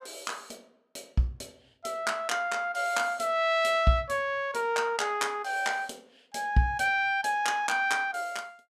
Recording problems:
none

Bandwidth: 14.5 kHz